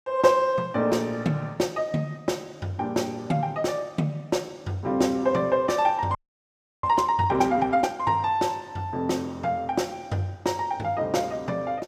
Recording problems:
audio freezing; at 6 s for 0.5 s

